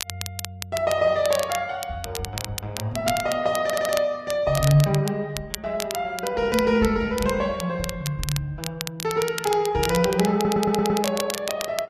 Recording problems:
lossy compression; Vorbis, log-spectral distance 2 dB
crackling; vinyl, SNR 9 dB
audio stuttering; at 3.5 s and at 10 s

